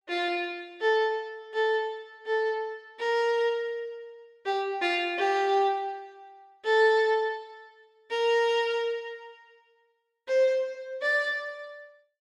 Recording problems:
none

